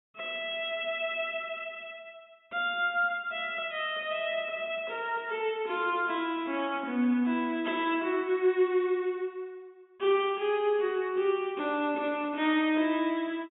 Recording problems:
treble cut off; nothing above 4 kHz

